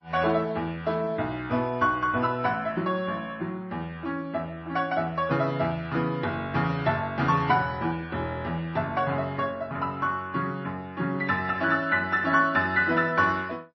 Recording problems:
lossy compression; MP3, log-spectral distance 2 dB, nothing above 5.8 kHz

